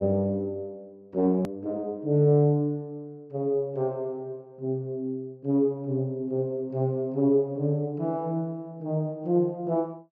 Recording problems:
edit click; at 1.5 s

